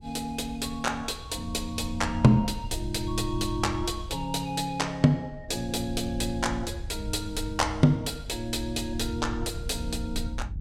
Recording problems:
wind noise; below 86 Hz, SNR 11 dB

